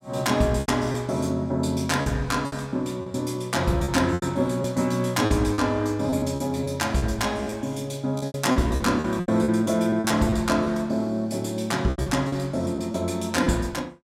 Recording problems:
packet loss; 10% of the sound replaced, filled with repeated pitch periods

